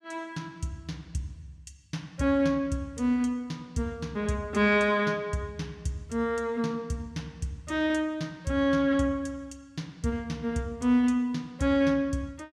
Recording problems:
none

